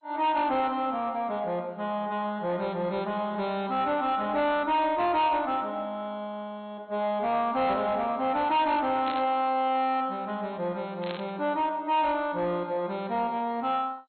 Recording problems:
codec artefacts; MP2, log-spectral distance 2 dB, nothing above 4.2 kHz
distorted audio; soft clipping, signal-to-distortion ratio 11 dB
burst of static; at 9 s and at 11 s; peak -6 dB vs average level

